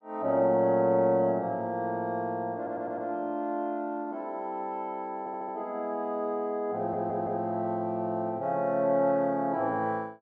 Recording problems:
stutter; at 2.5 s, at 5 s and at 7 s

